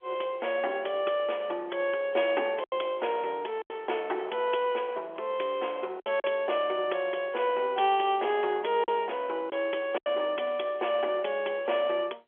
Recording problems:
telephone audio; 320 Hz to 3.5 kHz, G.711
packet loss; 3% of the sound replaced, filled with silence

